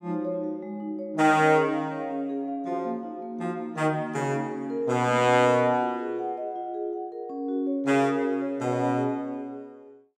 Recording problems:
none

